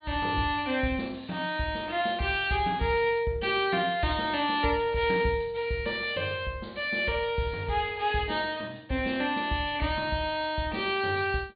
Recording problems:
treble cut off; nothing above 4.5 kHz

